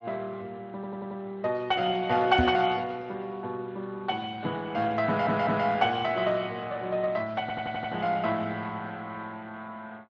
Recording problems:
lossy codec; Speex, log-spectral distance 3 dB
audio stuttering; at 0.5 s, at 5 s and at 7.5 s
knock on the microphone; at 2.5 s; peak +5 dB vs average level

